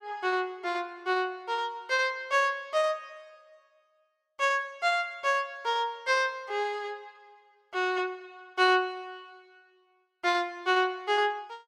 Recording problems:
none

